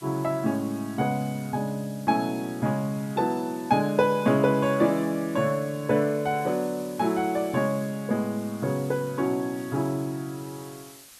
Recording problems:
hiss; slope +2 dB per octave, SNR 21 dB

